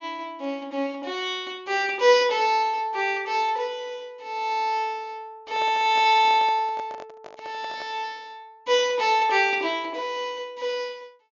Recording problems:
treble missing; nothing above 7.1 kHz
microphone handling noise; from 5.5 to 8 s; peak -10 dB vs average level

